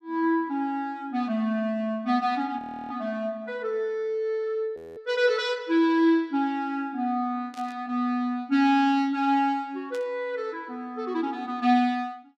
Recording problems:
audio freezing; at 2.5 s and at 5 s
static burst; at 7.5 s and at 10 s; peak -14 dB vs average level

